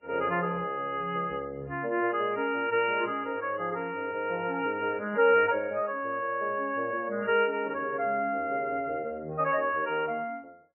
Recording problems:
lossy compression; MP3, then MP3, log-spectral distance 3 dB, nothing above 2.8 kHz

